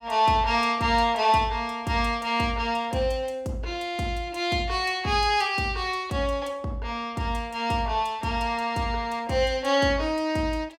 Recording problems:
none

